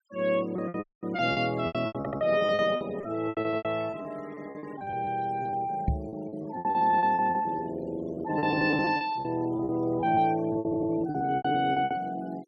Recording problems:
denoising artefacts; signal-to-artefact ratio 24 dB
packet loss; 18% of the sound replaced, filled with repeated pitch periods
dropout; at 1 s
stutter; at 2 s and at 11 s
microphone thump; at 6 s; peak +4 dB vs average level

